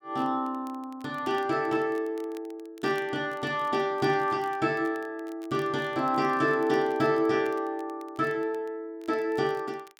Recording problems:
crackle; vinyl, SNR 28 dB

